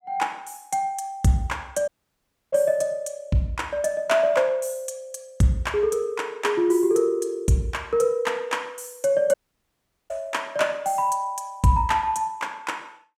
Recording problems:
dropout; at 2 s for 0.5 s and at 9.5 s for 1 s

